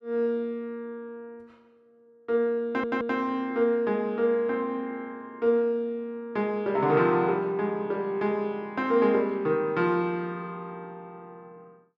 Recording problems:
stutter; at 2.5 s

